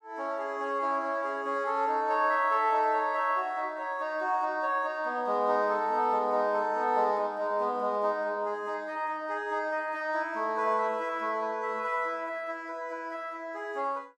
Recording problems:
none

